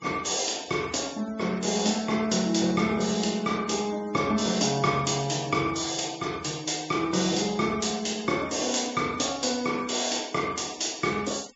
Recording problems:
low-pass filter; nothing above 8 kHz
noise reduction artefacts; signal-to-artefact ratio 20 dB

